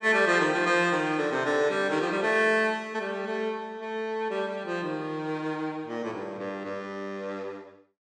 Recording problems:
none

